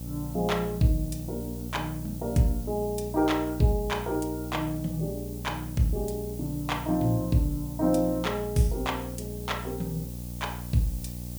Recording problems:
hum; 60 Hz, harmonics up to 600 Hz, SNR 9 dB
hiss; slope +5 dB per octave, SNR 15 dB

